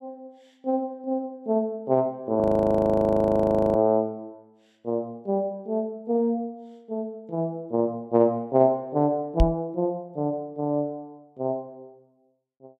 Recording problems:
audio freezing; at 2.5 s for 1.5 s
microphone bump; at 9.5 s; peak +7 dB vs average level

